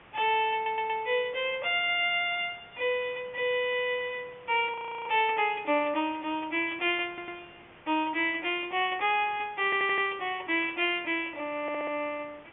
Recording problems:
low-pass filter; nothing above 3.3 kHz
background hiss; SNR 24 dB
audio stuttering; 4 times, first at 0.5 s
frozen audio; at 4.5 s
burst of static; at 11 s; peak -18 dB vs average level

